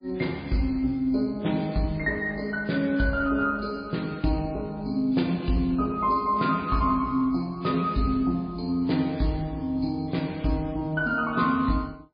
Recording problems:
lossy compression; MP3, log-spectral distance 2 dB, nothing above 4.2 kHz

